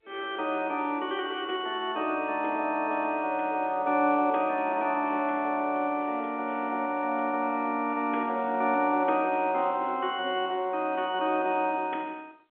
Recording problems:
phone line; 260 Hz to 3.9 kHz, G.711

